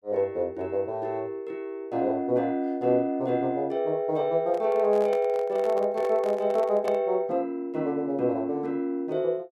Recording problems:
handling noise; from 4.5 to 7 s; peak -3 dB vs average level

